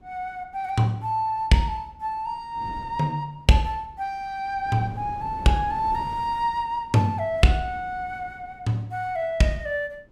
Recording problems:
wind noise; below 290 Hz, SNR 19 dB

